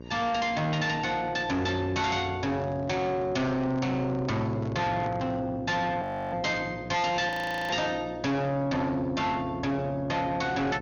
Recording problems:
lossy compression; MP2, log-spectral distance 2 dB
distorted audio; soft clipping, signal-to-distortion ratio 8 dB
electrical hum; 60 Hz, harmonics up to 1.6 kHz, SNR 15 dB
microphone handling noise; from 2.5 to 5.5 s; peak -7 dB vs average level
audio freezing; at 6 s and at 7.5 s

